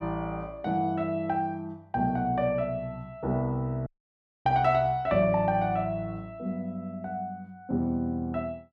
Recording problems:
audio cutting out; at 4 s for 0.5 s

